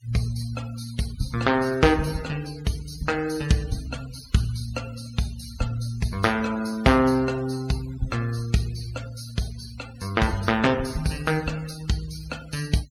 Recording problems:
noise reduction artefacts; signal-to-artefact ratio 18 dB

